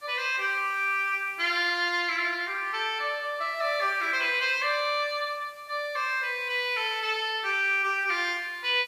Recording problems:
background hiss; SNR 28 dB

